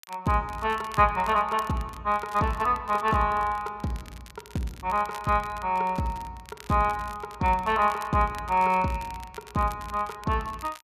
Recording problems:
crackling; vinyl, SNR 22 dB

